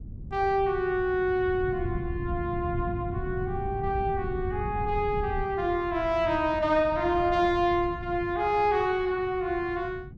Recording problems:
wind on the microphone; below 150 Hz, SNR 10 dB

